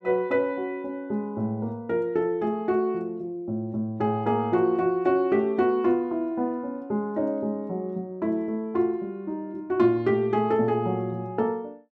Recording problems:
none

